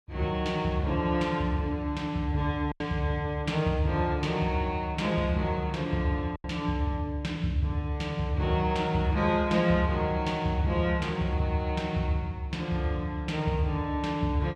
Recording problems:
packet loss; 1.1% of the sound replaced, filled with silence

